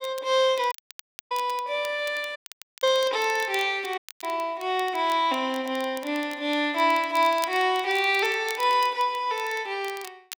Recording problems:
crackling; vinyl, SNR 19 dB
dropout; at 0.5 s for 0.5 s, at 2.5 s and at 4 s

